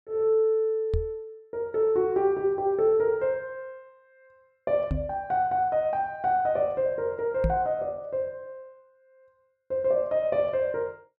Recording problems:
microphone bump; at 1 s, at 5 s and at 7.5 s; peak +2 dB vs average level

